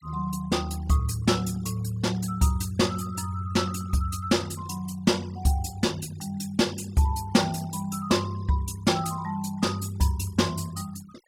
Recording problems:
denoising artefacts; signal-to-artefact ratio 22 dB

